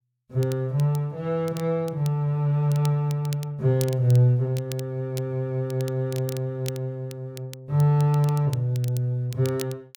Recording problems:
crackling; vinyl, SNR 19 dB

